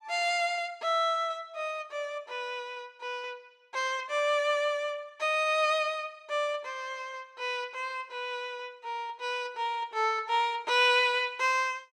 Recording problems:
none

